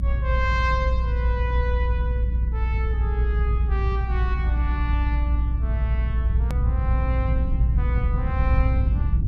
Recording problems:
low-frequency rumble; below 72 Hz, strongest tone 58 Hz, SNR -8 dB
hard cut with a click; at 6.5 s

